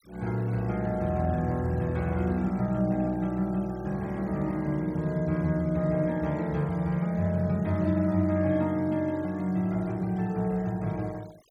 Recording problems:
denoising artefacts; signal-to-artefact ratio 26 dB

